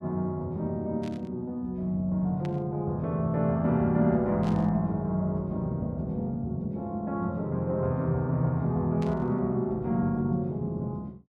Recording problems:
burst of static; 4 times, first at 1 s; peak -12 dB vs average level

